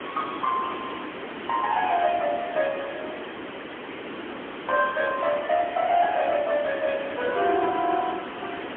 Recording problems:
phone line; 220 Hz to 3.3 kHz, AMR-NB, then MP3
background hiss; SNR 10 dB
wind on the microphone; below 590 Hz, SNR 19 dB

